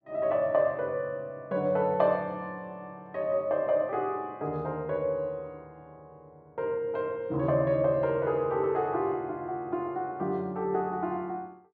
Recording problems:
none

